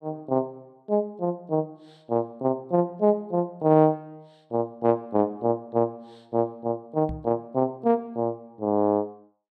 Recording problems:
microphone thump; at 7 s; peak -5 dB vs average level

